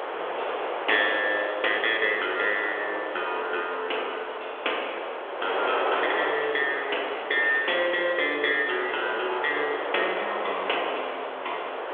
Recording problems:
telephone audio; 370 Hz to 3.5 kHz, G.726
wind noise; below 1.4 kHz, SNR 5 dB

